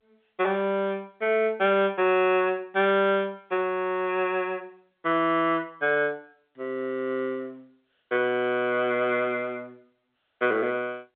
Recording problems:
phone line; 130 Hz to 3.6 kHz, G.711

